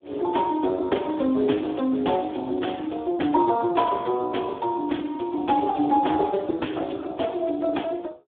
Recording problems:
telephone audio; 220 Hz to 3.6 kHz, Speex

